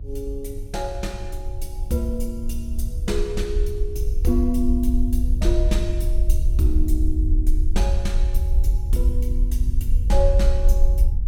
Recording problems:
hum; 50 Hz, harmonics up to 500 Hz, SNR 16 dB
low-frequency rumble; below 56 Hz, SNR -4 dB

